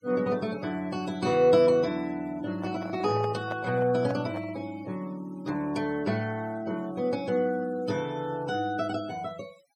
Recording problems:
noise reduction artefacts; signal-to-artefact ratio 22 dB
microphone handling noise; from 2.5 to 4.5 s; peak -4 dB vs average level

